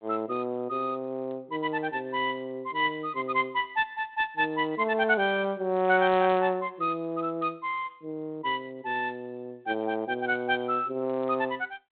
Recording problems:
phone line; 150 Hz to 3.7 kHz, G.726

